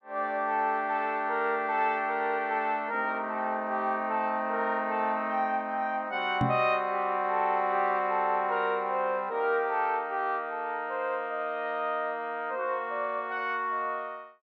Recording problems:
microphone thump; at 6.5 s; peak +3 dB vs average level

